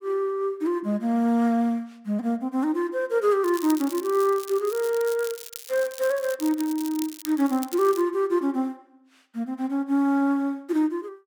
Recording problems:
crackling; from 3.5 to 8 s; loose cable, SNR 15 dB

